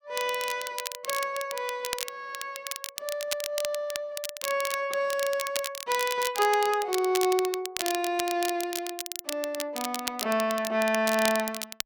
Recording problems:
crackle; vinyl, SNR 6 dB

